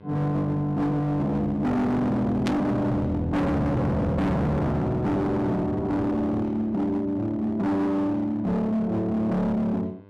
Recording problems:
distortion; hard clipping, signal-to-distortion ratio 6 dB
hum; 50 Hz, harmonics up to 1.6 kHz, SNR 25 dB
burst of static; at 2.5 s; peak -3 dB vs average level

